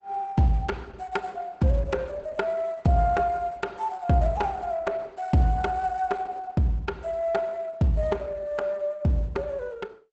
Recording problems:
lossy codec; Opus, log-spectral distance 2 dB, nothing above 8 kHz

